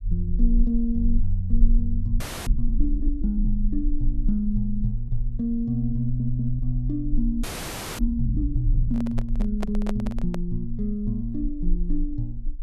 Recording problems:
low-frequency rumble; below 38 Hz, strongest tone 24 Hz, SNR 2 dB
frozen audio; at 2 s and at 7.5 s for 0.5 s
stutter; at 6 s
handling noise; from 9 to 10 s; peak -1 dB vs average level

